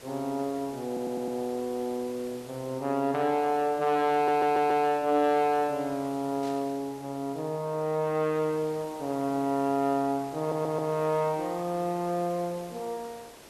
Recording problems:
hiss; slope -4 dB per octave, SNR 19 dB
audio stuttering; at 1 s, at 4 s and at 10 s
static burst; at 6.5 s; peak -14 dB vs average level

